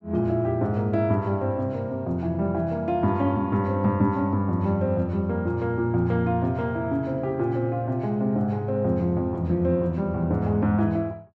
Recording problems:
none

